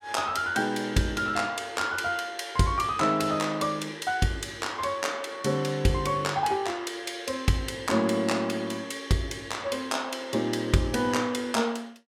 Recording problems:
none

